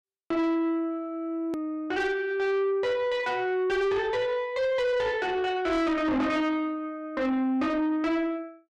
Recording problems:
distorted audio; soft clipping, signal-to-distortion ratio 8 dB
edit click; at 1.5 s

